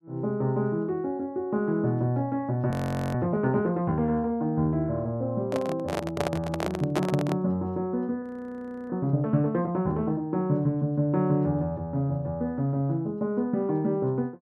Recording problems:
audio freezing; at 2.5 s and at 8 s for 0.5 s
microphone handling noise; from 5.5 to 7.5 s; peak +2 dB vs average level

